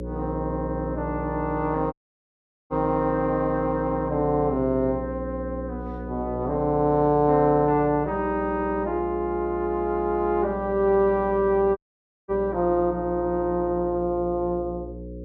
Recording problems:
mains hum; 60 Hz, harmonics up to 540 Hz, SNR 11 dB
audio cutting out; at 2 s for 1 s and at 12 s for 0.5 s

